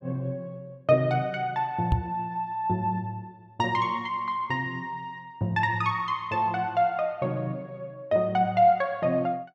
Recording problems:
microphone thump; at 2 s; peak +6 dB vs average level

